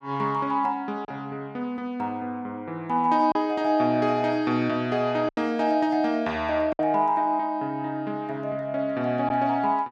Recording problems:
packet loss; 2% of the sound replaced, filled with silence

